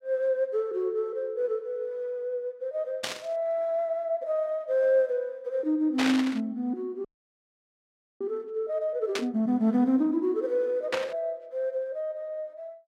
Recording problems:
static burst; 4 times, first at 3 s; peak +3 dB vs average level
frozen audio; at 7 s for 1 s

